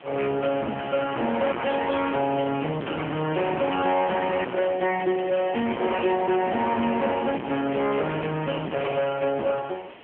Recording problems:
telephone audio; 190 Hz to 3.3 kHz, AMR-NB
distortion; hard clipping, uneven, signal-to-distortion ratio 5 dB
background hiss; SNR 20 dB

